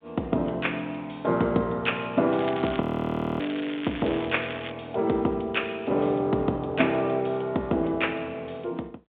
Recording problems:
phone line; 190 Hz to 3.6 kHz, G.726
crackle; from 2.5 to 4.5 s; loose cable, SNR 13 dB
audio freezing; at 3 s for 0.5 s

